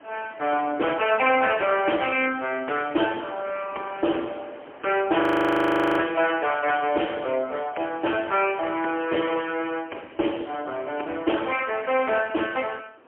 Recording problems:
telephone audio; 240 Hz to 3.2 kHz, AMR-NB, then MP3
wind noise; below 1.5 kHz, SNR 22 dB
audio freezing; at 5 s for 1 s

